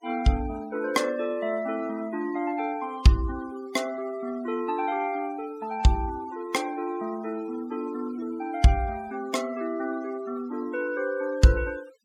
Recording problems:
noise reduction artefacts; signal-to-artefact ratio 20 dB

